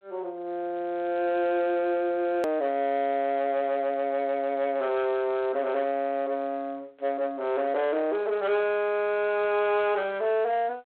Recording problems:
phone line; 300 Hz to 3.7 kHz, G.726
distorted audio; soft clipping, signal-to-distortion ratio 11 dB
click at an edit; at 2.5 s

